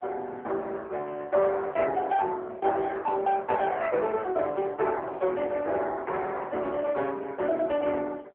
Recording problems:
phone line; 320 Hz to 3.6 kHz, AMR-NB

